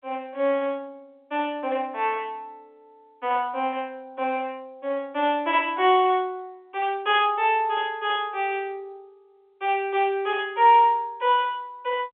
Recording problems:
phone line; 280 Hz to 3.5 kHz, G.711

